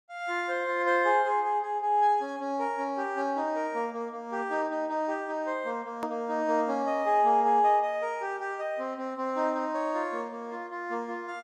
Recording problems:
click at an edit; at 6 s

